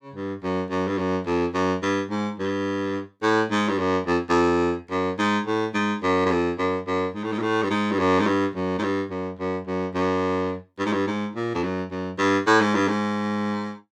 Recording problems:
none

